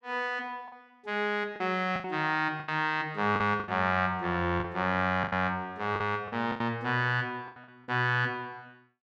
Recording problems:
lost packets; 9% of the sound replaced, filled with the last packet

